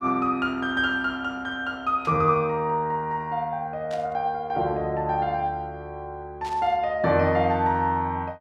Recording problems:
static burst; at 2 s, at 4 s and at 6.5 s; peak -13 dB vs average level

